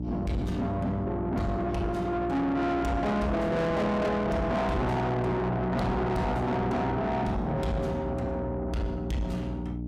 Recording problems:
distorted audio; soft clipping, signal-to-distortion ratio 8 dB
hum; 60 Hz, harmonics up to 720 Hz, SNR 6 dB

